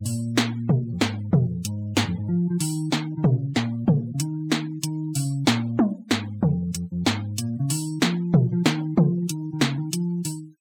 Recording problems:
noise reduction artefacts; signal-to-artefact ratio 21 dB

